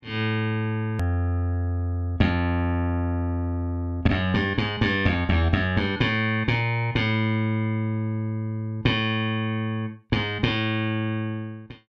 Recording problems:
edit click; at 1 s

